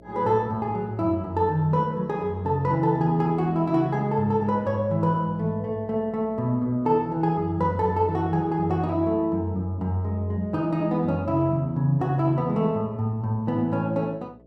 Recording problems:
hum; 60 Hz, harmonics up to 660 Hz, SNR 26 dB

